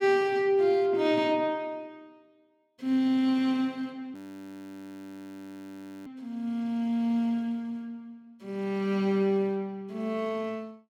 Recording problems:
audio freezing; at 4 s for 2 s

